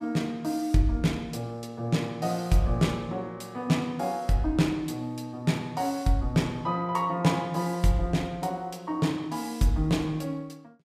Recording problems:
none

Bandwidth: 15 kHz